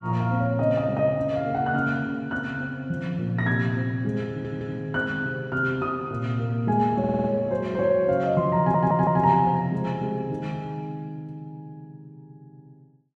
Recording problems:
audio stuttering; at 4.5 s, at 7 s and at 8.5 s

